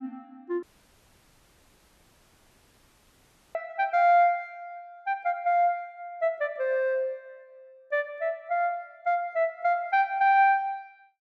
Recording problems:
audio cutting out; at 0.5 s for 3 s

